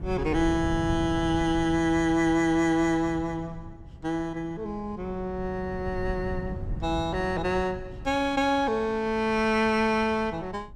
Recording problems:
wind noise; below 150 Hz, SNR 12 dB

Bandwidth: 14.5 kHz